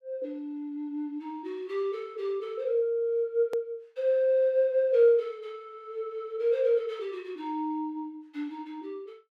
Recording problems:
hard cut with a click; at 3.5 s

